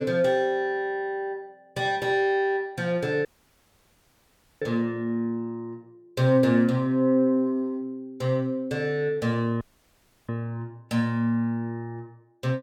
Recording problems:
dropout; at 3.5 s for 1.5 s and at 9.5 s for 0.5 s

